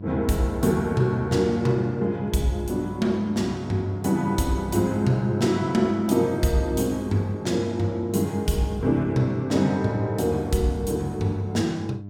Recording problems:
hum; 50 Hz, harmonics up to 700 Hz, SNR 13 dB

